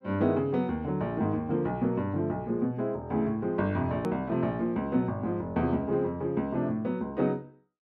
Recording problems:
edit click; at 4 s

